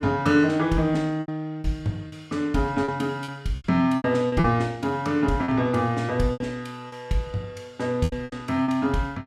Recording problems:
lost packets; 9% of the sound replaced, filled with repeated pitch periods

